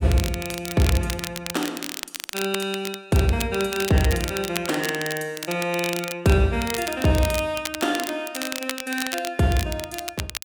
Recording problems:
crackle; vinyl, SNR 8 dB

